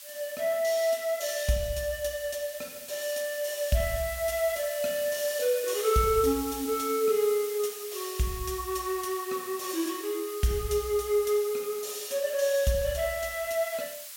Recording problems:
background hiss; slope +5 dB per octave, SNR 11 dB

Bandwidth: 16.5 kHz